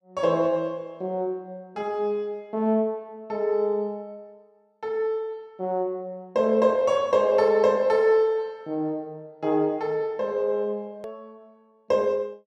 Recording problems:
click at an edit; at 11 s

